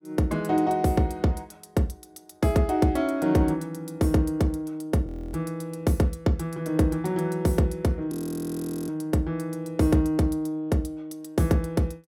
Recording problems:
audio freezing; at 5 s and at 8 s for 1 s

